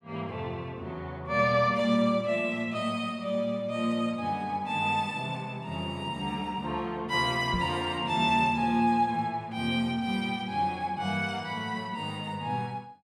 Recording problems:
microphone bump; at 7.5 s; peak 0 dB vs average level

